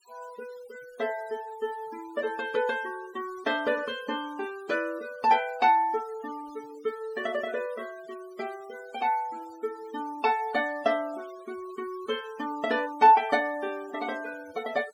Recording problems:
denoising artefacts; signal-to-artefact ratio 21 dB

